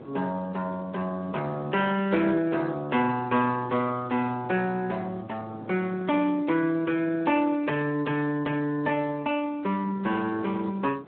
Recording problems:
telephone audio; 220 Hz to 3.4 kHz, Speex
wind on the microphone; below 560 Hz, SNR 19 dB

